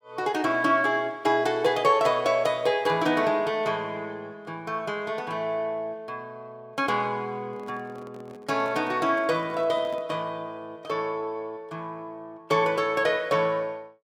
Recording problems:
microphone handling noise; from 7.5 to 10 s; peak -13 dB vs average level

